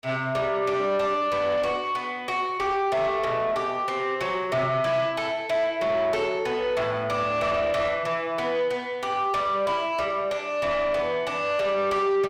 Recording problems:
distorted audio; soft clipping, signal-to-distortion ratio 10 dB

